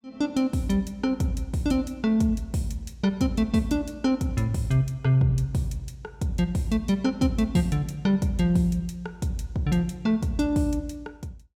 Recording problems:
none

